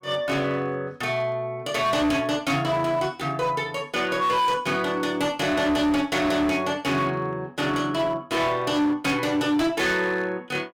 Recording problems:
distortion; hard clipping, signal-to-distortion ratio 10 dB

